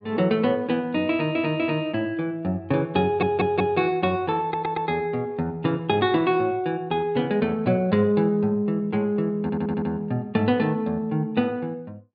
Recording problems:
treble cut off; nothing above 4.9 kHz
stutter; 4 times, first at 1 s

